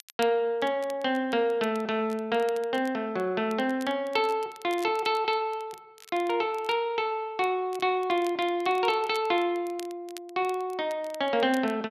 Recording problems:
crackle; vinyl, SNR 23 dB

